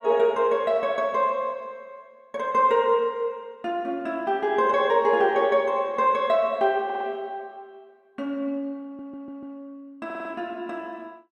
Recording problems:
stutter; at 7 s, at 9 s and at 10 s

